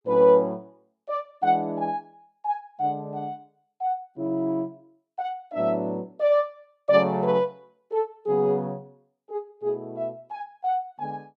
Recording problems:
none

